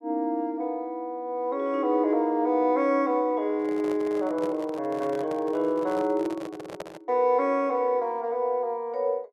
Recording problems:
handling noise; from 3.5 to 7 s; peak -6 dB vs average level

